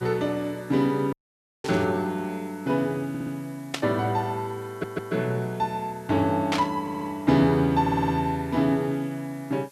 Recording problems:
background hiss; slope 0 dB per octave, SNR 27 dB
dropout; at 1 s for 0.5 s
static burst; at 1.5 s, at 3.5 s and at 6.5 s; peak +2 dB vs average level
stutter; 4 times, first at 3 s

